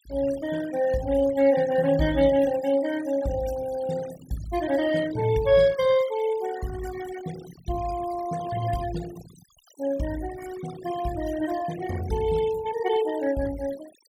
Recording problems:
denoising artefacts; signal-to-artefact ratio 15 dB

